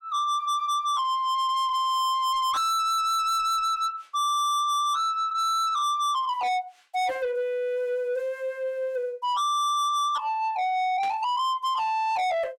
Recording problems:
distortion; soft clipping, signal-to-distortion ratio 6 dB
static burst; at 11 s; peak -11 dB vs average level

